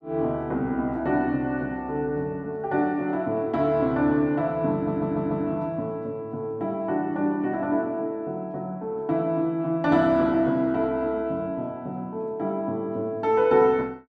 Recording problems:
stutter; at 4.5 s

